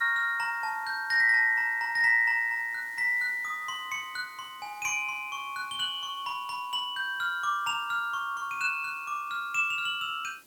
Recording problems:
background hiss; SNR 27 dB

